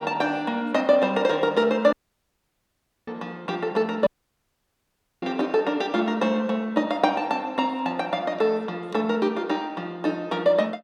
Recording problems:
dropout; at 2 s for 1 s and at 4 s for 1 s

